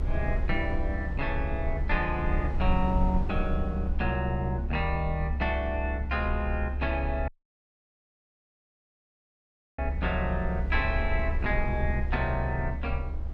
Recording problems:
rumble; below 68 Hz, SNR 1 dB
dropout; at 7.5 s for 2.5 s

